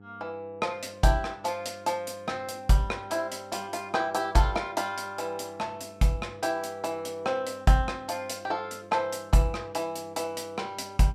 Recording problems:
hum; 50 Hz, harmonics up to 1.3 kHz, SNR 23 dB

